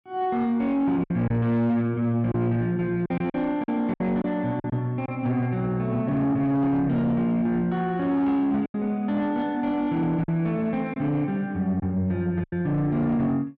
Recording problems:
distortion; soft clipping, signal-to-distortion ratio 10 dB
packet loss; 5% of the sound replaced, filled with silence

